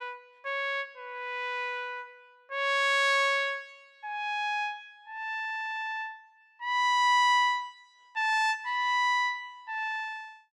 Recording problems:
none

